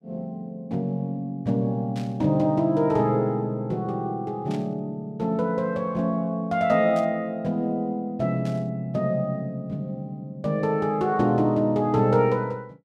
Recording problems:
static burst; 4 times, first at 2 s; peak -14 dB vs average level

